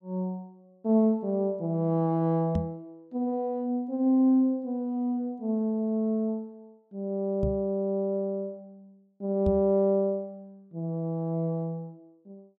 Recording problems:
microphone thump; at 2.5 s, at 7.5 s and at 9.5 s; peak +1 dB vs average level

